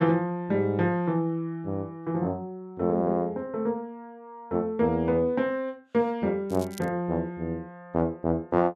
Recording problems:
crackling; at 6.5 s; loose cable, SNR 19 dB

